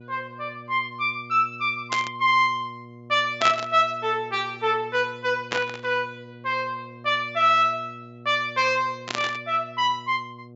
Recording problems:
treble cut off; nothing above 8 kHz
electrical hum; 60 Hz, harmonics up to 720 Hz, SNR 21 dB
static burst; 4 times, first at 2 s; peak +2 dB vs average level

